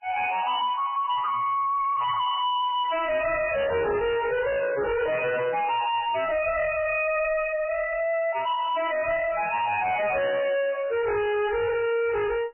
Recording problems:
lossy codec; MP3, log-spectral distance 5 dB, nothing above 2.5 kHz
distorted audio; soft clipping, signal-to-distortion ratio 6 dB

